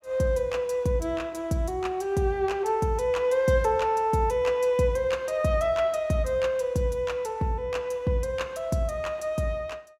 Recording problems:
none

